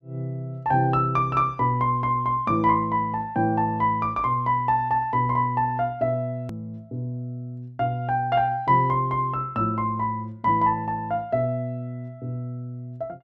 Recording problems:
hard cut with a click; at 6.5 s

